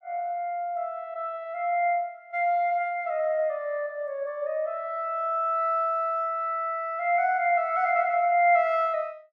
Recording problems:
none

